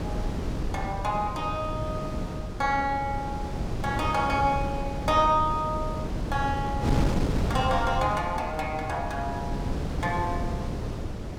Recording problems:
wind on the microphone; below 300 Hz, SNR 3 dB

